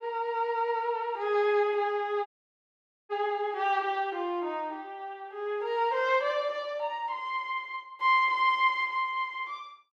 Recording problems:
audio cutting out; at 2.5 s for 1 s

